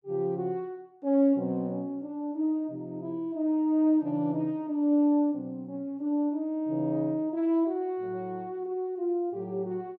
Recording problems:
none

